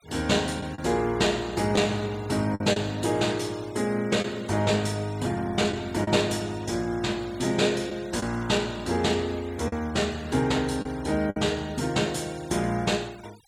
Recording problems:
denoising artefacts; signal-to-artefact ratio 21 dB
packet loss; 3% of the sound replaced, filled with the last packet

